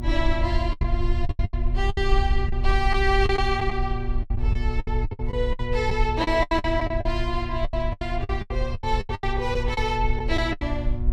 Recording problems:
hum; 60 Hz, harmonics up to 1.1 kHz, SNR 8 dB
rumble; below 60 Hz, SNR 2 dB
lost packets; 16% of the sound replaced, filled with the last packet

